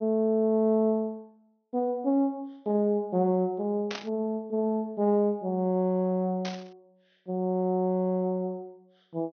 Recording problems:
treble missing; nothing above 6.3 kHz
burst of static; at 4 s and at 6.5 s; peak -5 dB vs average level

